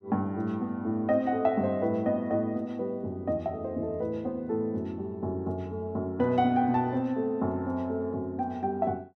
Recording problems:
none

